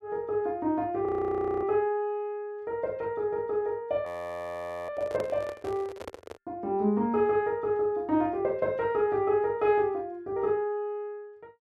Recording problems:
frozen audio; at 1 s for 0.5 s and at 4 s for 1 s
handling noise; from 5 to 6.5 s; peak -5 dB vs average level

